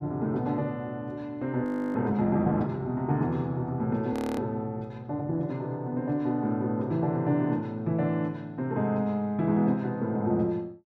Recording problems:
frozen audio; at 1.5 s and at 4 s

